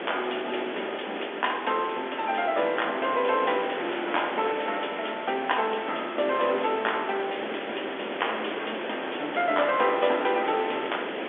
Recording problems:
telephone audio; 220 Hz to 3.5 kHz, G.711
background hiss; SNR 6 dB

